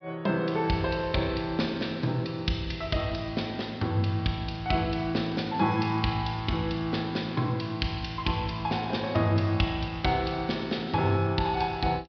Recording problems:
low-pass filter; nothing above 5.5 kHz

